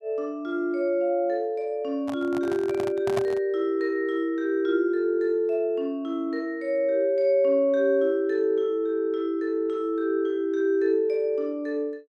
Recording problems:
handling noise; from 2 to 3.5 s; peak -1 dB vs average level

